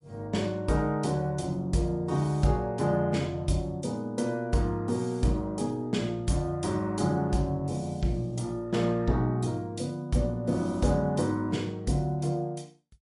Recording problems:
codec artefacts; MP3, log-spectral distance 2 dB, nothing above 10.7 kHz

